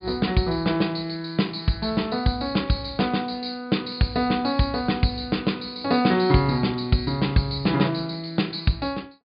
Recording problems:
low-pass filter; nothing above 4.9 kHz

